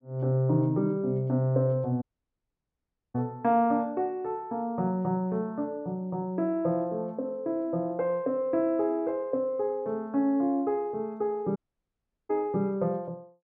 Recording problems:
audio cutting out; at 2 s for 1 s and at 12 s for 0.5 s

